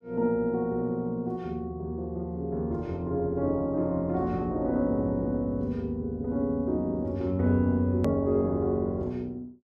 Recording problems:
edit click; at 8 s

